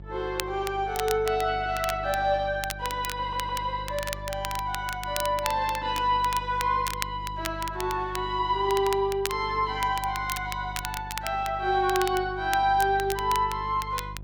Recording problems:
electrical hum; 50 Hz, harmonics up to 550 Hz, SNR 14 dB
crackling; vinyl, SNR 10 dB
stutter; at 3 s

